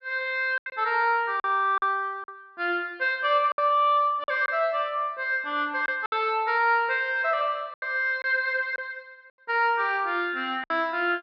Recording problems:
low-pass filter; nothing above 5.5 kHz
packet loss; 6% of the sound replaced, filled with silence

